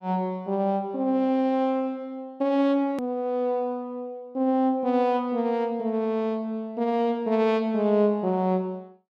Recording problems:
edit click; at 3 s

